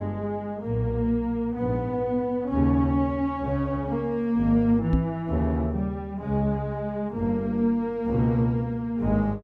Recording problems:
microphone thump; at 5 s; peak +5 dB vs average level

